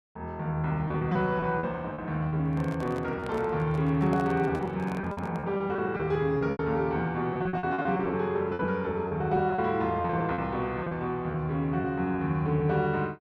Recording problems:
lost packets; 11% of the sound replaced, filled with repeated pitch periods
microphone handling noise; from 2.5 to 5.5 s; peak -6 dB vs average level

